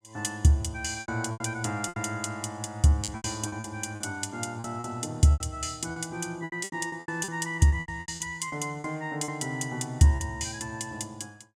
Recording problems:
packet loss; 12% of the sound replaced, filled with repeated pitch periods

